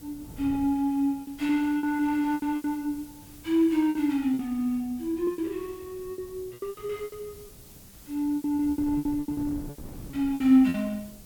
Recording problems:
hiss; SNR 23 dB
wind on the microphone; below 260 Hz, SNR 20 dB
packet loss; 15% of the sound replaced, filled with repeated pitch periods

